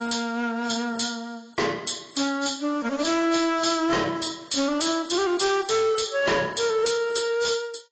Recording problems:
codec artefacts; AAC, log-spectral distance 7 dB, nothing above 7.8 kHz
distortion; hard clipping, signal-to-distortion ratio 10 dB

